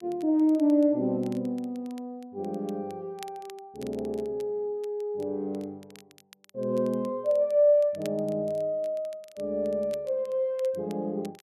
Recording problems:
crackle; vinyl, SNR 27 dB

